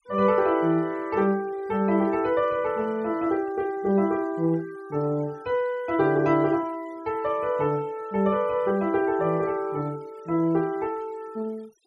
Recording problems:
noise reduction artefacts; signal-to-artefact ratio 27 dB

